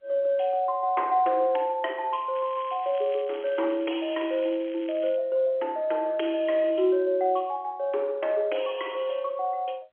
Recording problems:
telephone audio; 280 Hz to 3.3 kHz, G.711
crackle; from 2.5 to 5 s; loose cable, SNR 22 dB

